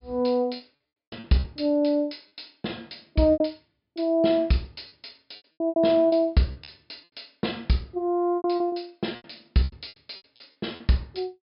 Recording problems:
treble missing; nothing above 5.5 kHz
lost packets; 13% of the sound replaced, filled with repeated pitch periods

